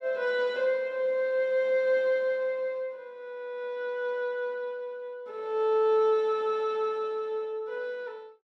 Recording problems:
none

